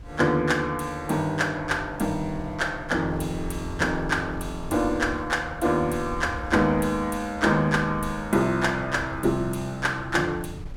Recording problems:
wind noise; below 130 Hz, SNR 15 dB

